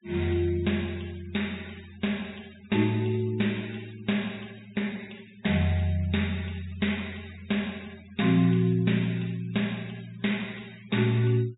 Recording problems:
treble cut off; nothing above 4 kHz
noise reduction artefacts; signal-to-artefact ratio 24 dB

